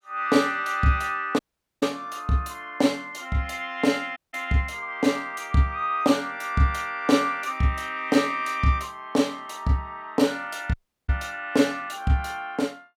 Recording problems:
dropout; at 1.5 s, at 4 s and at 11 s

